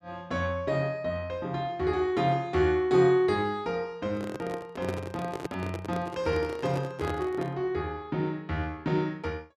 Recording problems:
microphone handling noise; from 4 to 7.5 s; peak -1 dB vs average level

